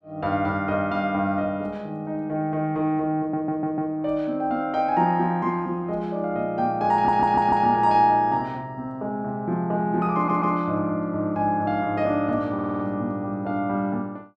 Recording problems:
audio stuttering; 4 times, first at 3 s

